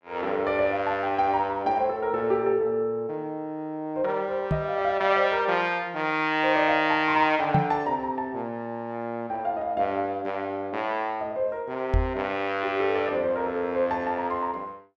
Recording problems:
microphone bump; at 4.5 s, at 7.5 s and at 12 s; peak +5 dB vs average level

